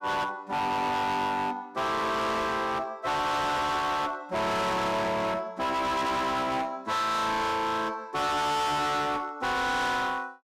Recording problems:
distorted audio; hard clipping, uneven, signal-to-distortion ratio 6 dB

